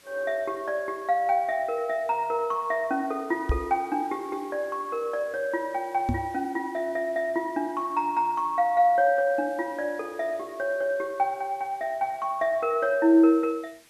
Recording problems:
background hiss; SNR 28 dB
microphone bump; at 3.5 s and at 6 s; peak +4 dB vs average level

